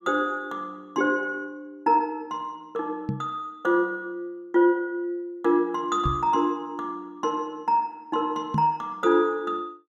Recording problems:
microphone thump; at 3 s, at 6 s and at 8.5 s; peak +3 dB vs average level

